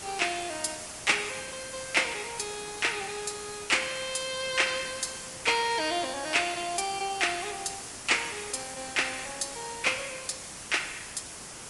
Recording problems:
codec artefacts; MP3, log-spectral distance 17 dB, nothing above 11 kHz
hiss; slope -2 dB per octave, SNR 10 dB

